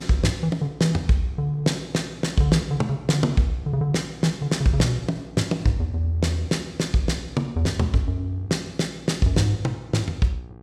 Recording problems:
hum; 60 Hz, harmonics up to 1.6 kHz, SNR 22 dB

